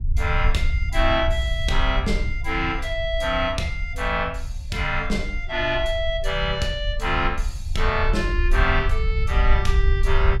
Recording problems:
rumble; below 60 Hz, strongest tone 22 Hz, SNR 2 dB

